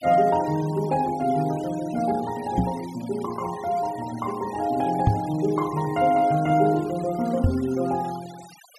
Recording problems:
noise reduction artefacts; signal-to-artefact ratio 20 dB
knock on the microphone; at 2.5 s, at 5 s and at 7.5 s; peak +7 dB vs average level

